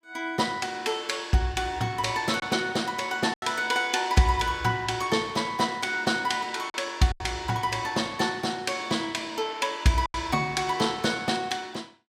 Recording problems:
lost packets; 3% of the sound replaced, filled with silence

